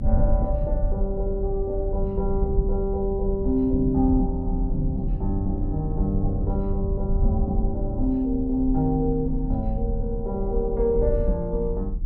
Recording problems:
low-frequency rumble; below 68 Hz, strongest tone 32 Hz, SNR 2 dB

